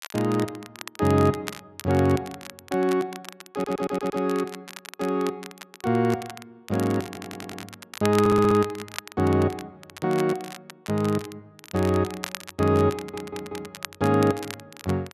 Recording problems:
crackle; vinyl, SNR 15 dB
stutter; 4 times, first at 3.5 s

